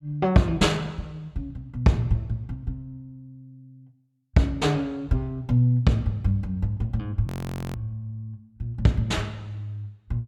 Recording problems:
audio freezing; at 7.5 s

